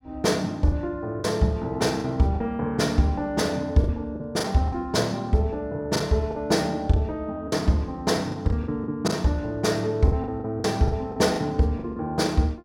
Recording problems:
packet loss; 8% of the sound replaced, filled with the last packet

